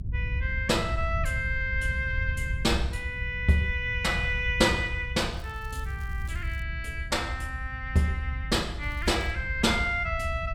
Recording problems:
rumble; below 86 Hz, SNR 6 dB
crackling; from 5.5 to 6.5 s and at 9 s; loose cable, SNR 28 dB

